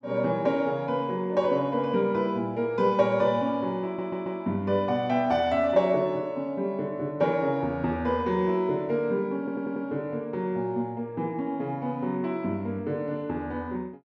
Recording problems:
audio stuttering; at 4 s and at 9.5 s

